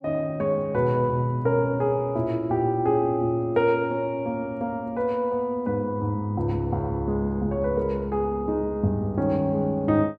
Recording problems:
none

